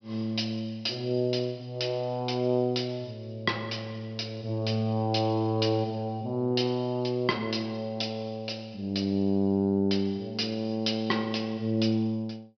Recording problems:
low-pass filter; nothing above 5.5 kHz

